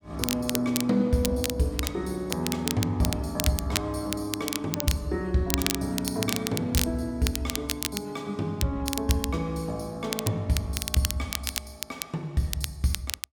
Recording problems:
crackling; vinyl, SNR 4 dB

